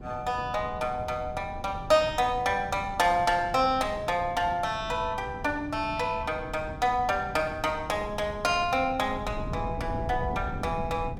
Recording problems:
wind on the microphone; below 210 Hz, SNR 12 dB

